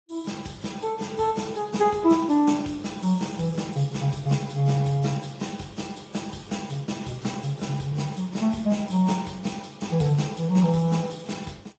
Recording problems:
lossy codec; AAC, then Speex, log-spectral distance 5 dB, nothing above 7.6 kHz
crackling; at 3 s; loose cable, SNR 29 dB

